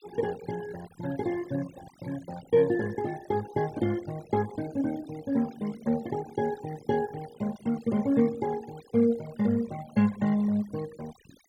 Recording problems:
noise reduction artefacts; signal-to-artefact ratio 19 dB

